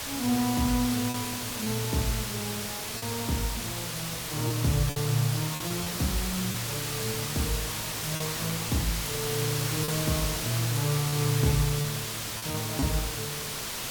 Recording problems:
hiss; slope 0 dB per octave, SNR 1 dB
packet loss; 4% of the sound replaced, filled with repeated pitch periods

